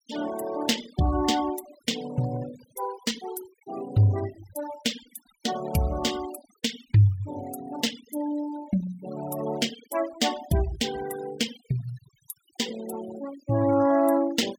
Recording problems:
denoising artefacts; signal-to-artefact ratio 16 dB

